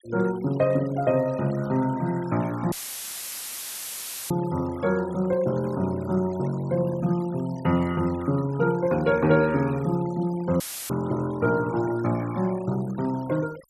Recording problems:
noise reduction artefacts; signal-to-artefact ratio 20 dB
audio cutting out; at 2.5 s for 1.5 s and at 11 s; filled with static

